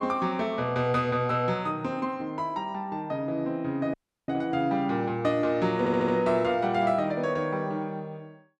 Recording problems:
audio cutting out; at 4 s
stutter; at 6 s

